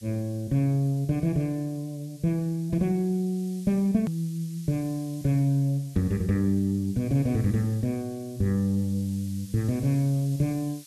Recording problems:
hiss; slope +7 dB per octave, SNR 23 dB
hard cut with a click; at 4 s

